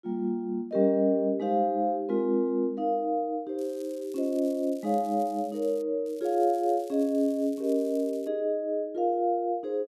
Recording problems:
crackle; from 3.5 to 6 s and from 6 to 8.5 s; loose cable, SNR 26 dB

